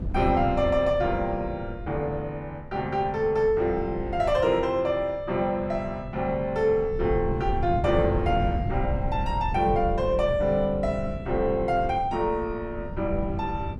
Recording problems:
wind noise; below 130 Hz, SNR 8 dB

